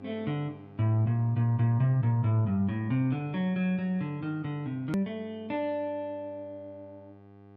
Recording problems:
mains hum; 50 Hz, harmonics up to 1.6 kHz, SNR 23 dB
click at an edit; at 5 s

